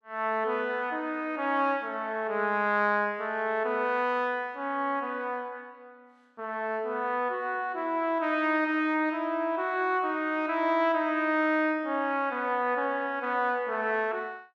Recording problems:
none

